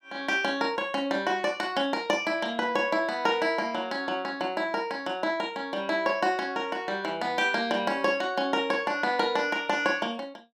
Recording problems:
none

